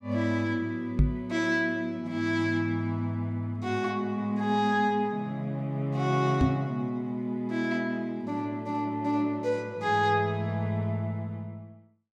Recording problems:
microphone bump; at 1 s and at 6.5 s; peak +9 dB vs average level

